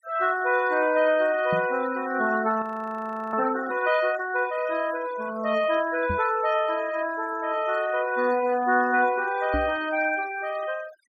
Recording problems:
denoising artefacts; signal-to-artefact ratio 18 dB
knock on the microphone; at 1.5 s, at 6 s and at 9.5 s; peak -1 dB vs average level
frozen audio; at 2.5 s for 0.5 s

